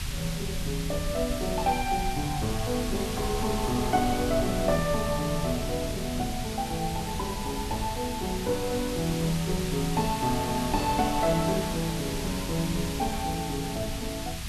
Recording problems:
background hiss; slope +1 dB per octave, SNR 7 dB
low-frequency rumble; below 110 Hz, SNR 9 dB

